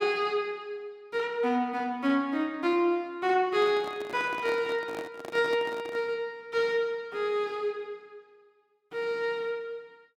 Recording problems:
microphone handling noise; from 3.5 to 6 s; peak -6 dB vs average level

